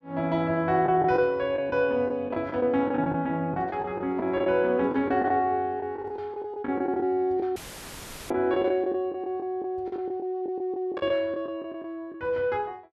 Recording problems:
lost packets; 11% of the sound replaced, filled with the last packet
audio cutting out; at 7.5 s for 0.5 s; filled with static

